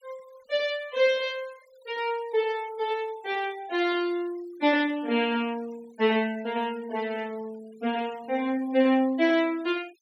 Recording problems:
denoising artefacts; signal-to-artefact ratio 24 dB

